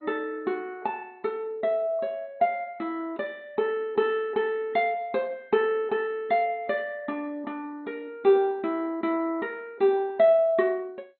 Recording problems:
lossy codec; MP2, log-spectral distance 2 dB, nothing above 3.6 kHz

